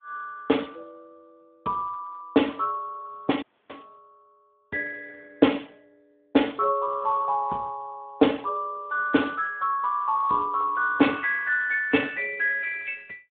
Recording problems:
phone line; 190 Hz to 3.5 kHz, Speex
dropout; at 3.5 s

